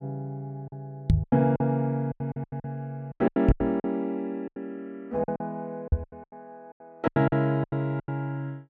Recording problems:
packet loss; 17% of the sound replaced, filled with silence
microphone thump; at 1 s, at 3.5 s and at 6 s; peak +10 dB vs average level

